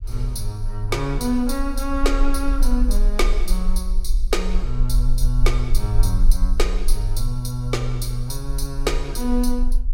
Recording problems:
low-frequency rumble; below 38 Hz, strongest tone 24 Hz, SNR 0 dB

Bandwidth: 16 kHz